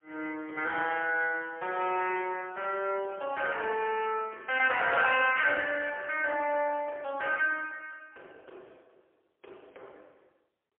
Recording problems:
telephone audio; 320 Hz to 3.3 kHz, AMR-NB, then MP3

